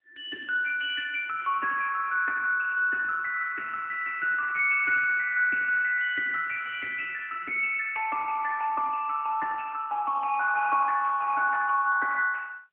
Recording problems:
phone line; 450 Hz to 2.6 kHz, AMR-NB

